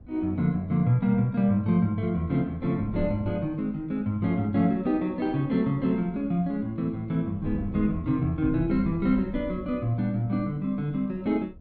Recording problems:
wind noise; below 110 Hz, SNR 18 dB

